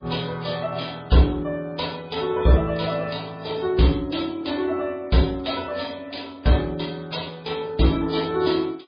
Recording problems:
codec artefacts; AAC, then MP3, log-spectral distance 6 dB, nothing above 11 kHz

